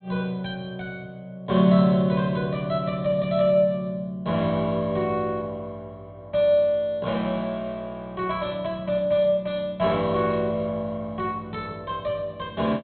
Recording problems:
treble cut off; nothing above 4 kHz

